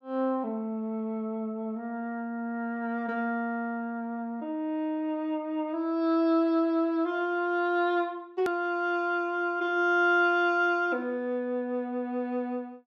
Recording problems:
hard cut with a click; at 8.5 s

